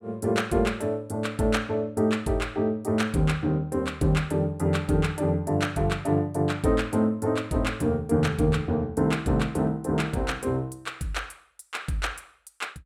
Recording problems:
none

